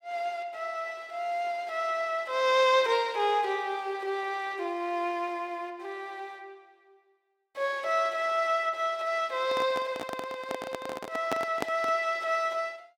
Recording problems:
microphone handling noise; from 9.5 to 12 s; peak +2 dB vs average level

